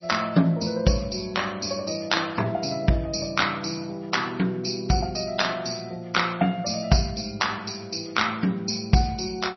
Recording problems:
codec artefacts; MP3, log-spectral distance 7 dB, nothing above 5.8 kHz

